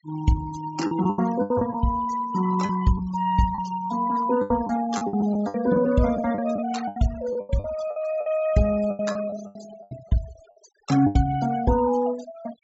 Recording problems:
low-pass filter; nothing above 8 kHz
denoising artefacts; signal-to-artefact ratio 16 dB
packet loss; 11% of the sound replaced, filled with the last packet

